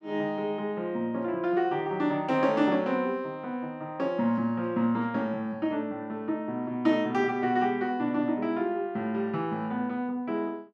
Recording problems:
none

